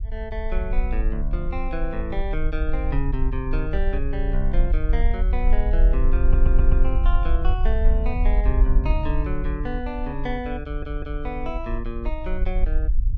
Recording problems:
rumble; below 48 Hz, strongest tone 22 Hz, SNR -5 dB
audio stuttering; at 6 s and at 11 s

